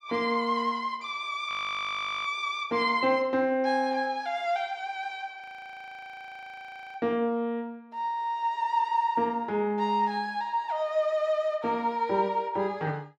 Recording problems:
audio freezing; at 1.5 s for 1 s and at 5.5 s for 1.5 s

